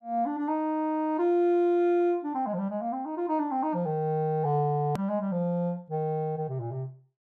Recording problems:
click at an edit; at 5 s

